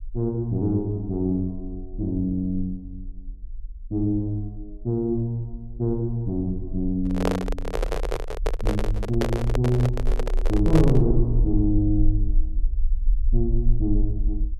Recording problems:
rumble; below 44 Hz, SNR 4 dB
handling noise; from 7 to 11 s; peak +4 dB vs average level

